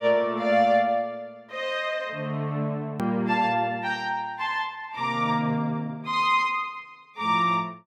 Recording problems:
hard cut with a click; at 3 s

